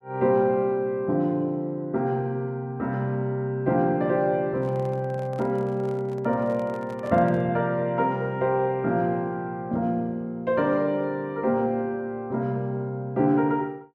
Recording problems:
handling noise; from 4.5 to 7.5 s; peak -13 dB vs average level

